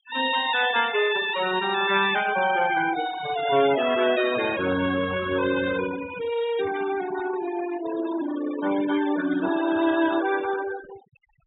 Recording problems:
low-pass filter; nothing above 4 kHz
denoising artefacts; signal-to-artefact ratio 10 dB

